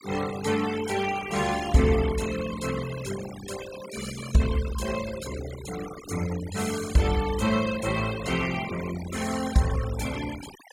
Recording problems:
noise reduction artefacts; signal-to-artefact ratio 12 dB

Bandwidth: 16.5 kHz